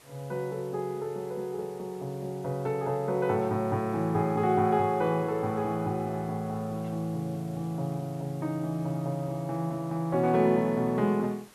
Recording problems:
background hiss; slope -3 dB per octave, SNR 25 dB

